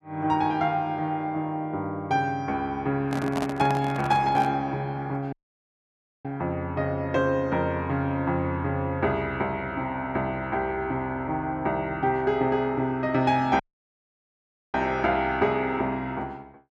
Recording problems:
handling noise; from 3 to 4.5 s; peak -1 dB vs average level
dropout; at 5.5 s for 1 s and at 14 s for 1 s

